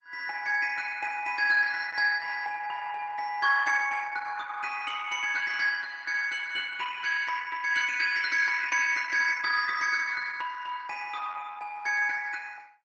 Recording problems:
lossy compression; Opus, log-spectral distance 4 dB, nothing above 8 kHz

